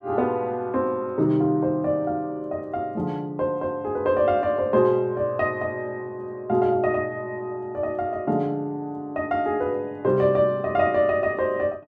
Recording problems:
none

